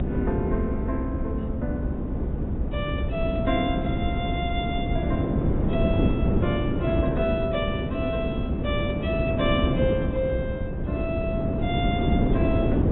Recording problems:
low-pass filter; nothing above 3.8 kHz
electrical hum; 50 Hz, harmonics up to 400 Hz, SNR 22 dB
rumble; below 74 Hz, strongest tone 62 Hz, SNR 5 dB
wind on the microphone; below 320 Hz, SNR -2 dB

